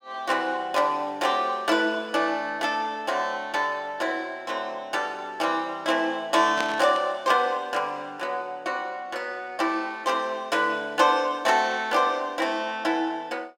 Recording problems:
static burst; at 6.5 s; peak -1 dB vs average level

